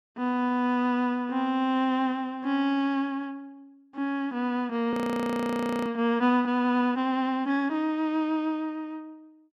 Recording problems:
audio freezing; at 5 s for 1 s

